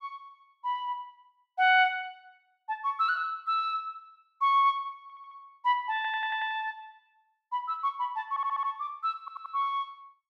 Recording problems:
audio stuttering; 4 times, first at 5 s

